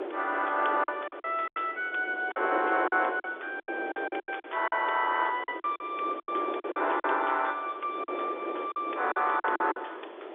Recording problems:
telephone audio; 320 Hz to 3.6 kHz, G.711
hiss; SNR 27 dB
wind on the microphone; below 710 Hz, SNR 8 dB
lost packets; 12% of the sound replaced, filled with silence

